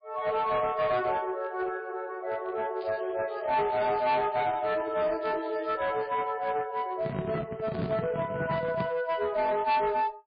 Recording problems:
lossy codec; MP3, log-spectral distance 3 dB, nothing above 4.8 kHz
distorted audio; hard clipping, uneven, signal-to-distortion ratio 11 dB
crackle; from 3 to 6 s; loose cable, SNR 23 dB
handling noise; from 7 to 9 s; peak +1 dB vs average level

